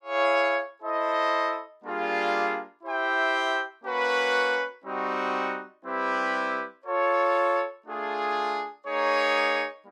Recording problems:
none

